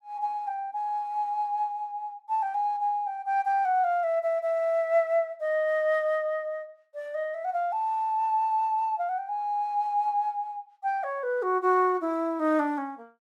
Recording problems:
none

